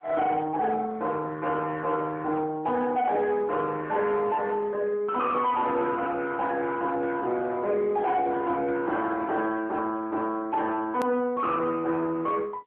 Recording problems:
telephone audio; 190 Hz to 3.4 kHz, AMR-NB
distortion; soft clipping, signal-to-distortion ratio 7 dB
hard cut with a click; at 11 s

